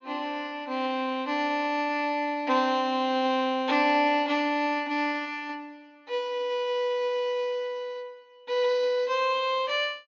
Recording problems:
low-pass filter; nothing above 6.8 kHz

